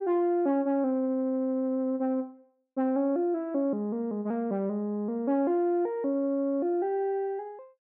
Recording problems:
none

